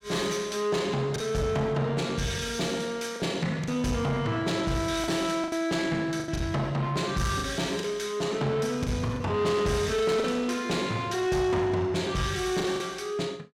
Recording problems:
distortion; soft clipping, signal-to-distortion ratio 10 dB
packet loss; 5% of the sound replaced, filled with the last packet

